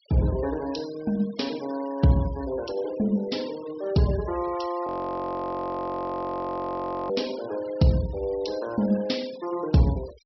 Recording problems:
treble missing; nothing above 5.7 kHz
denoising artefacts; signal-to-artefact ratio 19 dB
audio freezing; at 5 s for 2 s

